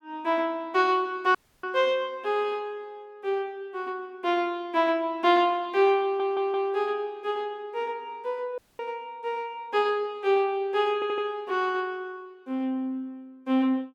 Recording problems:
audio cutting out; at 1.5 s and at 8.5 s
stutter; at 6 s and at 11 s

